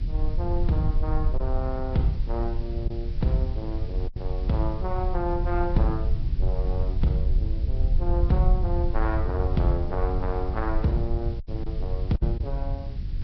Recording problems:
lossy codec; Vorbis, log-spectral distance 3 dB, nothing above 11 kHz
background hiss; SNR 25 dB
rumble; below 72 Hz, SNR -1 dB
lost packets; 2% of the sound replaced, filled with silence

